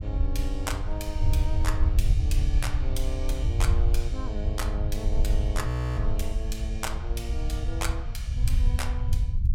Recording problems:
low-frequency rumble; below 76 Hz, SNR -7 dB
frozen audio; at 5.5 s

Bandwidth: 16.5 kHz